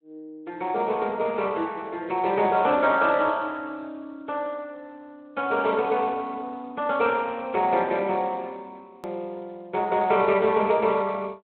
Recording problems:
telephone audio; 240 Hz to 3.9 kHz, Speex
hard cut with a click; at 9 s

